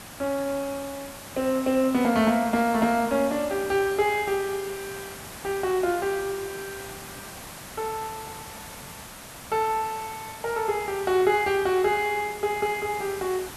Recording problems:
hiss; slope -3 dB per octave, SNR 13 dB

